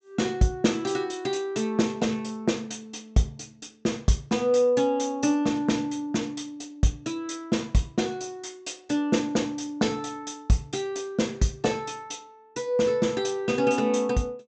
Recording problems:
treble missing; nothing above 8 kHz

